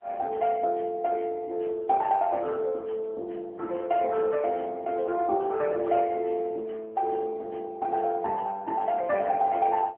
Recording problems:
telephone audio; 300 Hz to 3.6 kHz, AMR-NB

